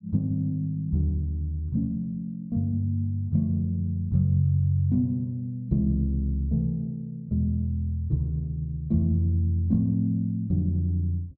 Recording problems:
none

